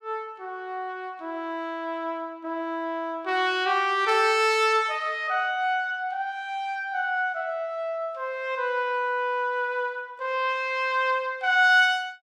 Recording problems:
none

